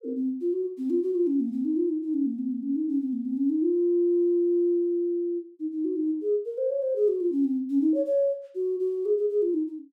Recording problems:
none

